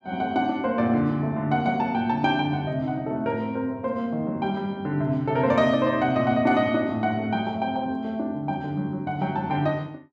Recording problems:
none

